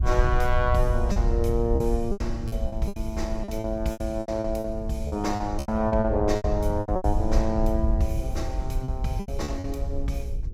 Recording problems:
hum; 50 Hz, harmonics up to 500 Hz, SNR 20 dB
rumble; below 76 Hz, SNR 2 dB
packet loss; 13% of the sound replaced, filled with repeated pitch periods

